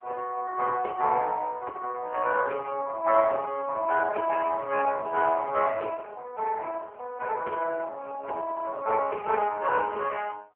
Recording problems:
phone line; 340 Hz to 3.1 kHz, AMR-NB

